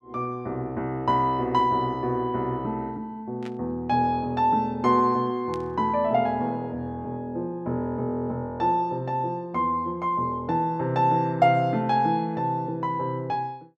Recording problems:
static burst; at 3.5 s and at 5.5 s; peak -13 dB vs average level

